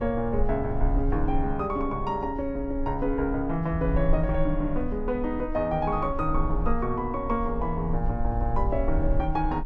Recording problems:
rumble; below 52 Hz, SNR 5 dB

